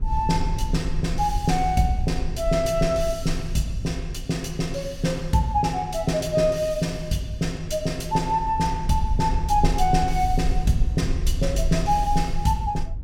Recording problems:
low-frequency rumble; below 62 Hz, SNR 7 dB

